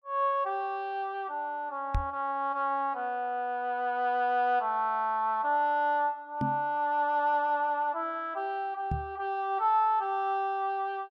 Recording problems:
microphone thump; at 2 s, at 6.5 s and at 9 s; peak +2 dB vs average level

